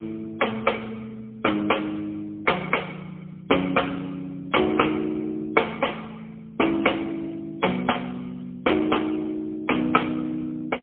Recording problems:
telephone audio; 240 Hz to 3.3 kHz, AMR-NB, then MP3

